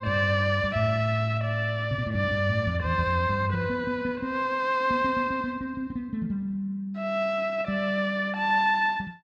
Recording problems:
none

